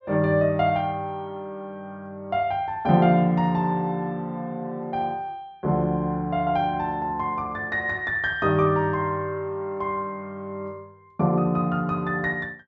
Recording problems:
treble missing; nothing above 8 kHz

